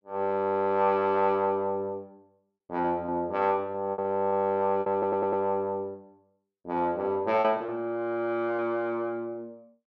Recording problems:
packet loss; 5% of the sound replaced, filled with repeated pitch periods
stutter; at 5 s

